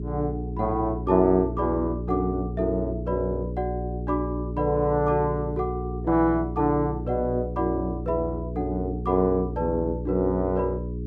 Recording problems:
hum; 60 Hz, harmonics up to 420 Hz, SNR 6 dB

